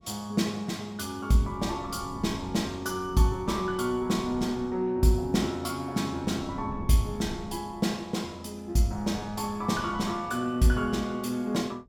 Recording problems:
wind on the microphone; below 210 Hz, SNR 16 dB

